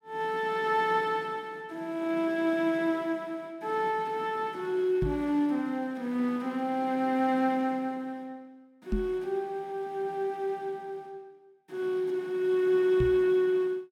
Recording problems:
knock on the microphone; at 5 s, at 9 s and at 13 s; peak +2 dB vs average level

